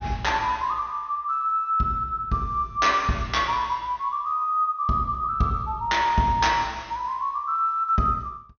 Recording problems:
low-pass filter; nothing above 6.4 kHz

